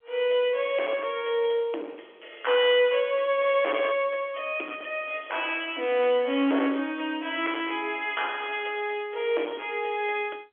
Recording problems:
telephone audio; 280 Hz to 3.4 kHz, G.711
distortion; hard clipping, signal-to-distortion ratio 10 dB

